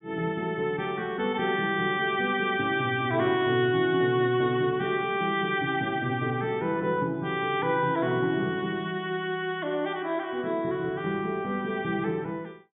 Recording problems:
treble cut off; nothing above 3.7 kHz

